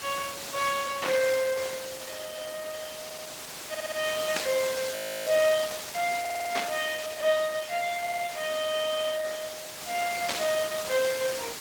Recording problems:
lossy compression; Opus, log-spectral distance 7 dB
background hiss; slope -1 dB per octave, SNR 8 dB
static burst; 4 times, first at 1 s; peak +2 dB vs average level
stutter; 4 times, first at 3 s
frozen audio; at 5 s

